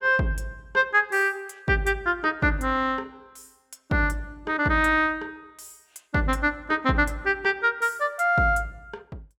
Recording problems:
none

